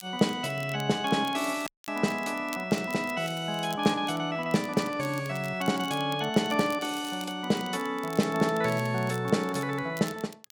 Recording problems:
crackle; vinyl, SNR 19 dB
audio cutting out; at 1.5 s

